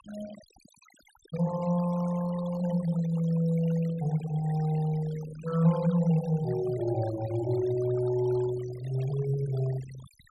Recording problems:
noise reduction artefacts; signal-to-artefact ratio 18 dB

